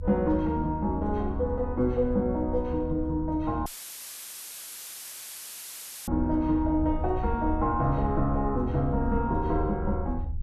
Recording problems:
rumble; below 76 Hz, SNR 7 dB
audio cutting out; at 3.5 s for 2.5 s; filled with static

